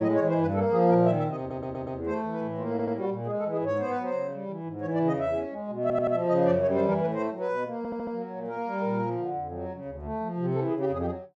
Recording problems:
audio stuttering; 4 times, first at 1.5 s

